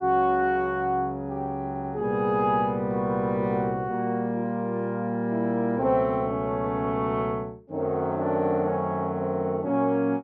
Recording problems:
stutter; at 1.5 s

